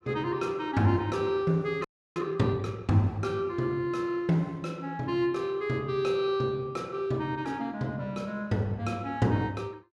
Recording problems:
audio freezing; at 2 s

